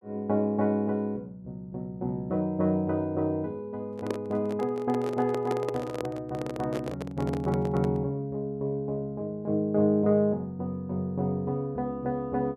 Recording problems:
handling noise; from 4 to 8 s; peak +1 dB vs average level

